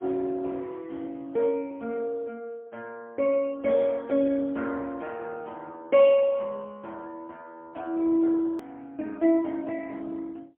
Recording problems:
phone line; 190 Hz to 3.9 kHz, AMR-NB, then MP3
hard cut with a click; at 8.5 s

